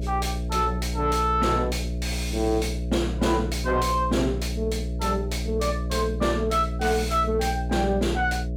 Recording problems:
distorted audio; soft clipping, signal-to-distortion ratio 9 dB
electrical hum; 60 Hz, harmonics up to 660 Hz, SNR 4 dB

